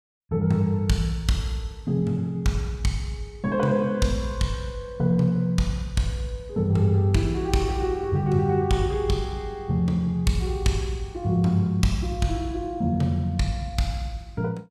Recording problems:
none

